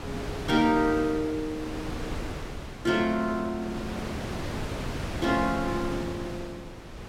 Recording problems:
wind noise; below 960 Hz, SNR 8 dB

